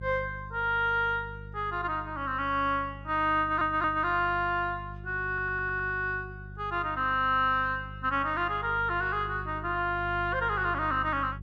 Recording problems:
electrical hum; 50 Hz, harmonics up to 400 Hz, SNR 14 dB
stutter; at 3.5 s and at 5.5 s

